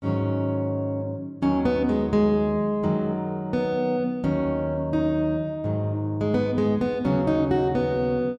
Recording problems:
none

